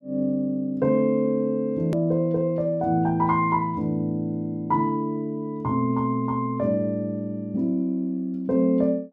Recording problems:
click at an edit; at 2 s

